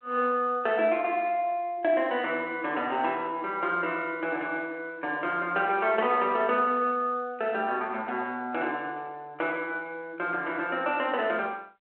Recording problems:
telephone audio; 320 Hz to 3.3 kHz, G.726

